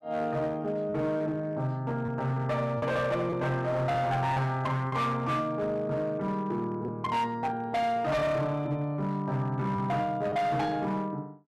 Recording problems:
distortion; hard clipping, signal-to-distortion ratio 11 dB
packet loss; 3% of the sound replaced, filled with repeated pitch periods

